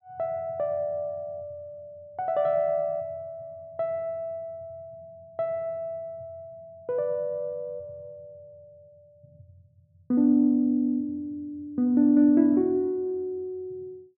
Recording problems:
none

